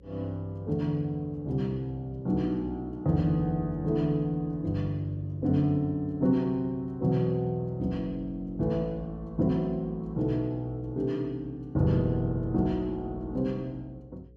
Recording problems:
electrical hum; 60 Hz, harmonics up to 540 Hz, SNR 24 dB

